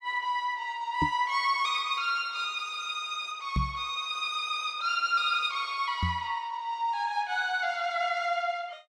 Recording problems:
knock on the microphone; at 1 s, at 3.5 s and at 6 s; peak +4 dB vs average level

